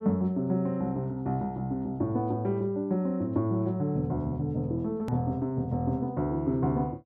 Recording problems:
click at an edit; at 5 s

